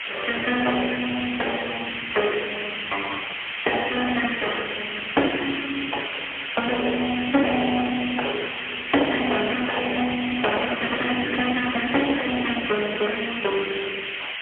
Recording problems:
telephone audio; 320 Hz to 3.4 kHz, AMR-NB, then MP3
distortion; soft clipping, signal-to-distortion ratio 16 dB
hiss; SNR 3 dB

